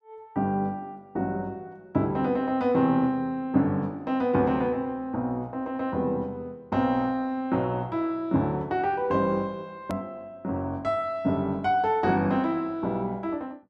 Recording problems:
edit click; at 10 s

